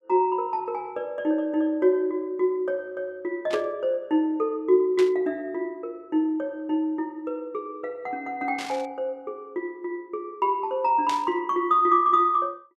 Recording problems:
static burst; 4 times, first at 3.5 s; peak -4 dB vs average level

